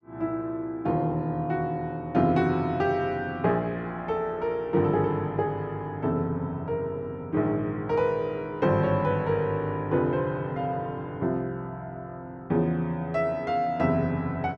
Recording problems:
none

